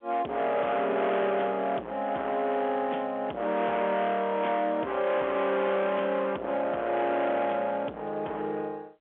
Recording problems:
phone line; 710 Hz to 3.5 kHz, G.711
distorted audio; hard clipping, signal-to-distortion ratio 9 dB

